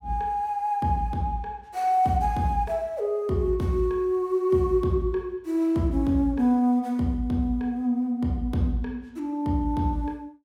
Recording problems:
none

